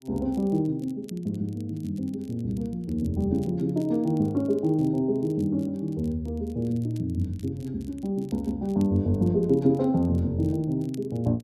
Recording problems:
crackle; vinyl, SNR 30 dB

